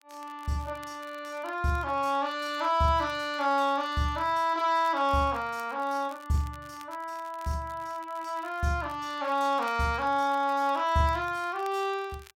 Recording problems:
crackling; vinyl, SNR 27 dB

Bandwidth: 16 kHz